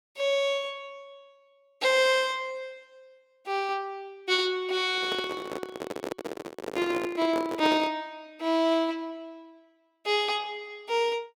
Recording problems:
microphone handling noise; from 5 to 8 s; peak 0 dB vs average level

